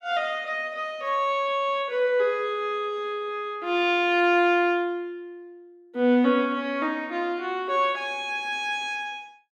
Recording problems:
none

